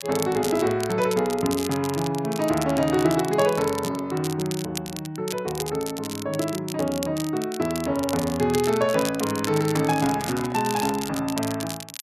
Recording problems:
crackling; vinyl, SNR 11 dB
microphone handling noise; from 9.5 to 11 s; peak -9 dB vs average level

